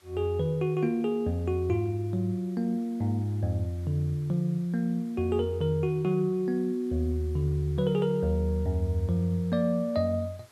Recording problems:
hiss; slope -2 dB per octave, SNR 30 dB

